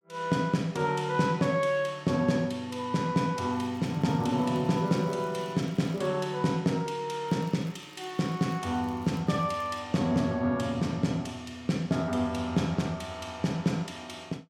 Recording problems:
crackling; from 3.5 to 6 s and from 7.5 to 10 s; loose cable, SNR 29 dB

